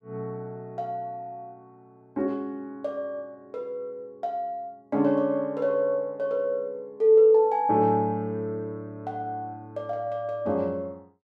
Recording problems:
none

